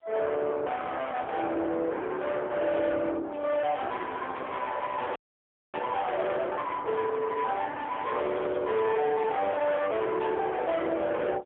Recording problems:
phone line; 800 Hz to 3.6 kHz, AMR-NB, then MP3
distorted audio; soft clipping, signal-to-distortion ratio 7 dB
crackle; from 3.5 to 6.5 s and from 8 to 9.5 s; loose cable, SNR 24 dB
audio freezing; at 5 s for 0.5 s

